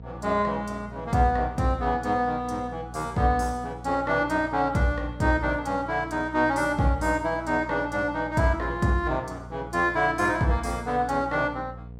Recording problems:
hum; 60 Hz, harmonics up to 720 Hz, SNR 16 dB

